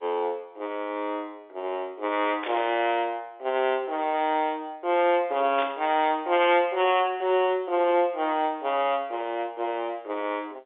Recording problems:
telephone audio; 280 Hz to 3.6 kHz, G.711
static burst; at 2.5 s and at 5.5 s; peak -6 dB vs average level

